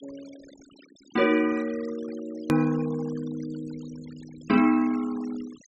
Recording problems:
treble missing; nothing above 8 kHz
denoising artefacts; signal-to-artefact ratio 21 dB
edit click; at 2.5 s

